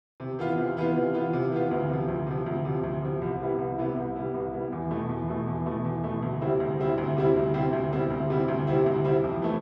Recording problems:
none

